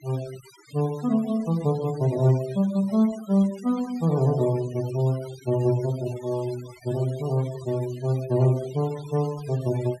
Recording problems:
denoising artefacts; signal-to-artefact ratio 20 dB

